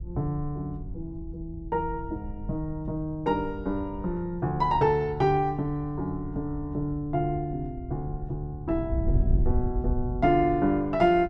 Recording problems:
wind noise; below 84 Hz, SNR 8 dB

